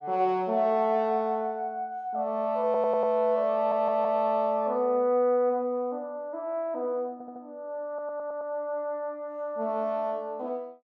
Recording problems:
audio stuttering; 4 times, first at 2.5 s

